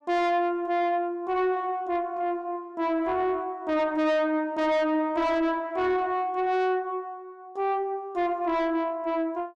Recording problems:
distortion; soft clipping, signal-to-distortion ratio 7 dB

